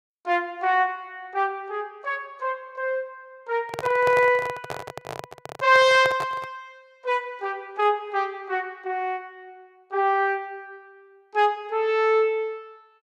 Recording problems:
microphone handling noise; from 3.5 to 6.5 s; peak -3 dB vs average level

